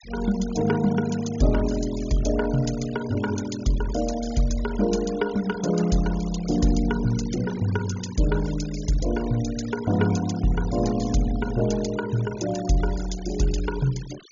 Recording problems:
treble cut off; nothing above 7 kHz
noise reduction artefacts; signal-to-artefact ratio 17 dB

